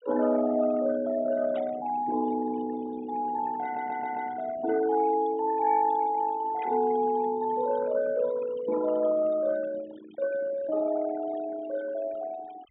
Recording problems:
low-pass filter; nothing above 4 kHz
denoising artefacts; signal-to-artefact ratio 17 dB
static burst; at 1.5 s and at 6.5 s; peak -16 dB vs average level
audio stuttering; at 3.5 s

